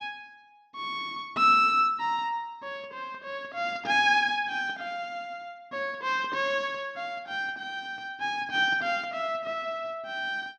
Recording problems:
none

